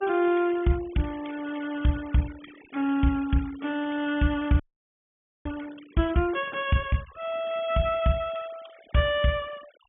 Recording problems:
treble cut off; nothing above 3.4 kHz
noise reduction artefacts; signal-to-artefact ratio 21 dB
audio freezing; at 4.5 s for 1 s

